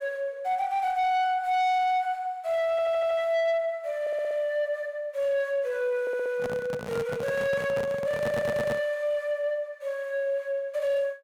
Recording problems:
distorted audio; soft clipping, signal-to-distortion ratio 11 dB
stutter; 4 times, first at 2.5 s
microphone handling noise; from 6.5 to 9 s; peak -2 dB vs average level

